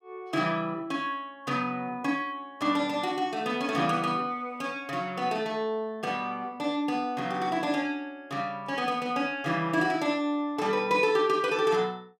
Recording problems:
none

